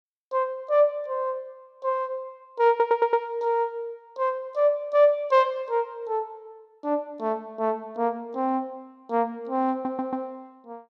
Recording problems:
stutter; at 2.5 s and at 9.5 s

